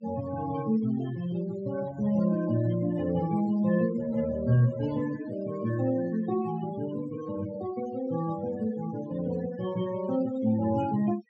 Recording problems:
treble cut off; nothing above 7.9 kHz
denoising artefacts; signal-to-artefact ratio 15 dB

